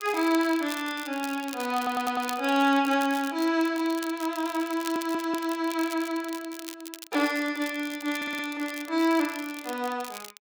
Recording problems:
crackle; vinyl, SNR 15 dB
stutter; at 2 s, at 5 s and at 8 s

